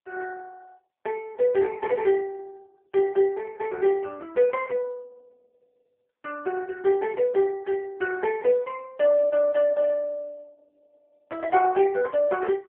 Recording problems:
telephone audio; 260 Hz to 2.7 kHz, AMR-NB

